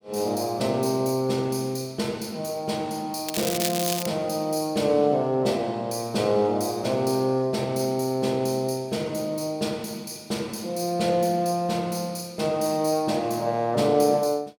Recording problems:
crackling; at 3.5 s; loose cable, SNR 4 dB

